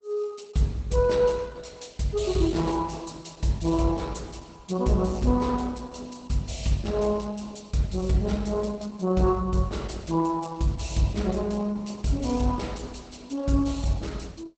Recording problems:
codec artefacts; Opus, log-spectral distance 4 dB, nothing above 8 kHz

